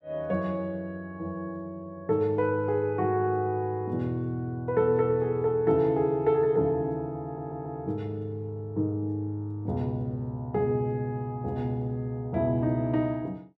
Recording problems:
stutter; at 7.5 s

